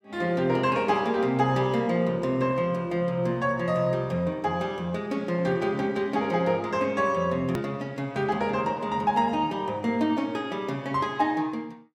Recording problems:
edit click; at 7.5 s

